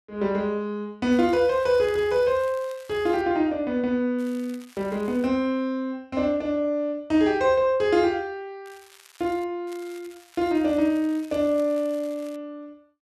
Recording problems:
crackling; 4 times, first at 1 s; loose cable, SNR 26 dB

